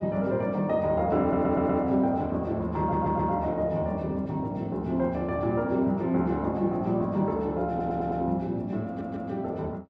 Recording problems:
stutter; 4 times, first at 1 s

